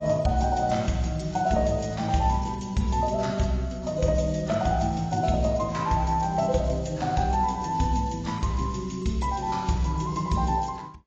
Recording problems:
lossy compression; AAC, log-spectral distance 4 dB, nothing above 7.3 kHz
crackling; from 1 to 2.5 s; loose cable, SNR 28 dB

